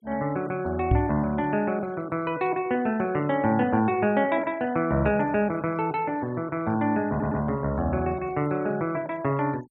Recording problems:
denoising artefacts; signal-to-artefact ratio 24 dB
microphone thump; at 1 s; peak +6 dB vs average level
stutter; at 7 s

